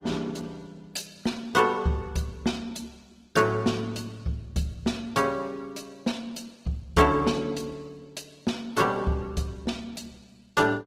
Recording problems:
lossy codec; Opus, log-spectral distance 4 dB, nothing above 15.5 kHz

